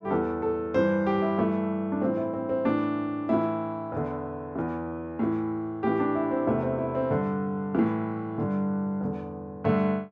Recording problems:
none

